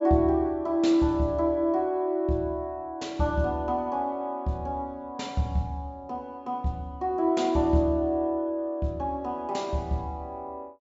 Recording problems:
treble cut off; nothing above 8 kHz

